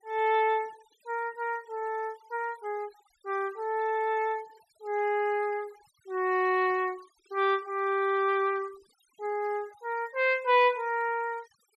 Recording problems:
denoising artefacts; signal-to-artefact ratio 26 dB

